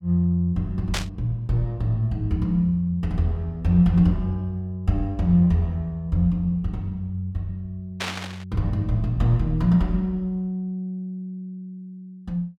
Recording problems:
static burst; at 1 s and at 8 s; peak 0 dB vs average level

